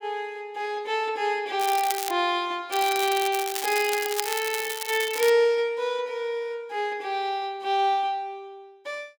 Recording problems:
crackle; at 1.5 s and from 2.5 to 5.5 s; loose cable, SNR 6 dB

